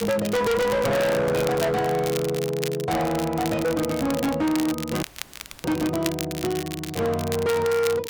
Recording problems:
distorted audio; hard clipping, signal-to-distortion ratio 6 dB
crackling; vinyl, SNR 11 dB
audio cutting out; at 5 s for 0.5 s

